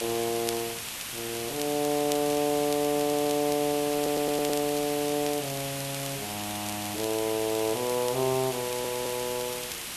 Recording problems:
background hiss; SNR 5 dB
crackle; vinyl, SNR 14 dB
stutter; at 3 s, at 4 s and at 8.5 s

